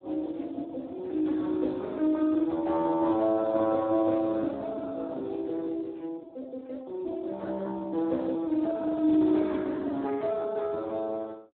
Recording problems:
phone line; 220 Hz to 2.1 kHz, Speex

